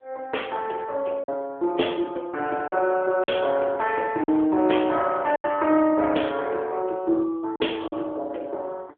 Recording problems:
phone line; 280 Hz to 3.4 kHz, AMR-NB
packet loss; 4% of the sound replaced, filled with silence

